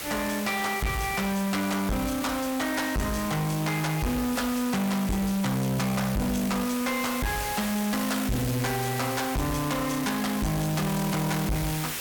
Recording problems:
distorted audio; soft clipping, signal-to-distortion ratio 7 dB
hiss; slope -1 dB per octave, SNR 6 dB

